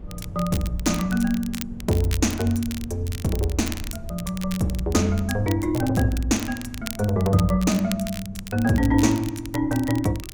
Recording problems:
wind noise; below 110 Hz, SNR 16 dB
crackling; vinyl, SNR 14 dB

